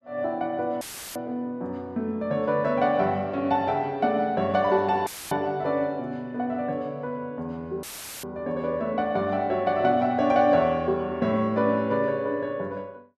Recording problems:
dropout; at 1 s, at 5 s and at 8 s; filled with static

